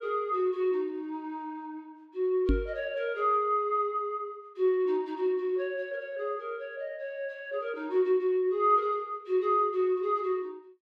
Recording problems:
knock on the microphone; at 2.5 s; peak +6 dB vs average level

